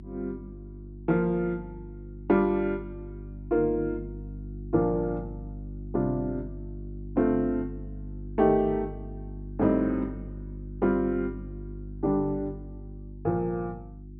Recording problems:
treble missing; nothing above 5.5 kHz
electrical hum; 50 Hz, harmonics up to 350 Hz, SNR 13 dB

